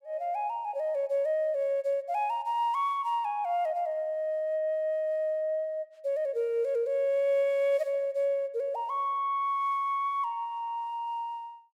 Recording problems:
none

